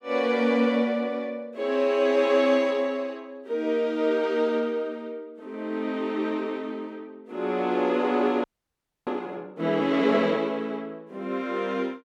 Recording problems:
frozen audio; at 8.5 s for 0.5 s

